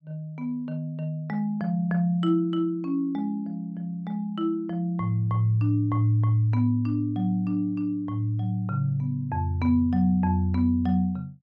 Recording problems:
none

